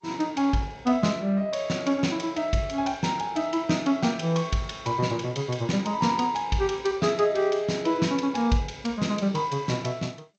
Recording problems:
codec artefacts; MP2, then G.722, log-spectral distance 4 dB

